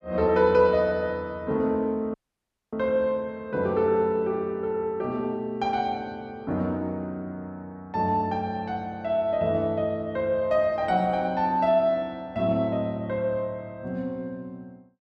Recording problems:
dropout; at 2 s for 0.5 s

